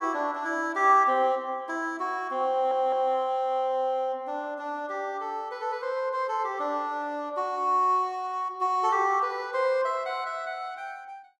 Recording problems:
audio stuttering; at 2.5 s

